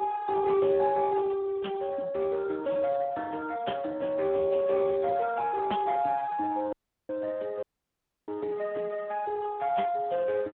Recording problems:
telephone audio; 220 Hz to 2.1 kHz, Speex
dropout; at 6.5 s and at 7.5 s for 0.5 s

